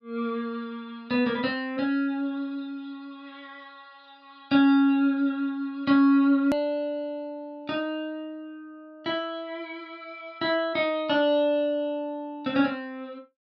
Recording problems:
edit click; at 6.5 s

